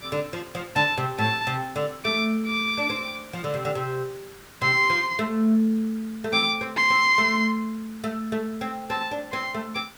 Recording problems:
hiss; SNR 22 dB

